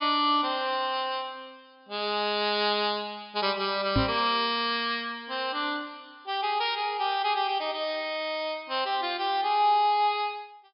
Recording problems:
treble missing; nothing above 5.5 kHz
microphone thump; at 4 s; peak +5 dB vs average level

